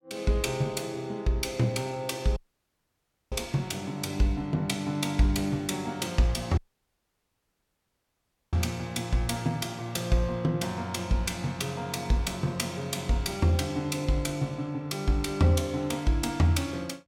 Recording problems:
dropout; at 2.5 s for 1 s and at 6.5 s for 2 s

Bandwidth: 17.5 kHz